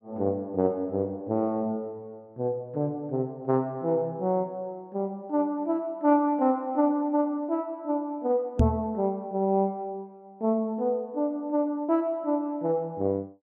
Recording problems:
microphone thump; at 8.5 s; peak +9 dB vs average level

